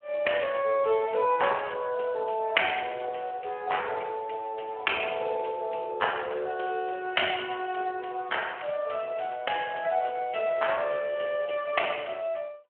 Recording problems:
telephone audio; 320 Hz to 3.1 kHz, Speex

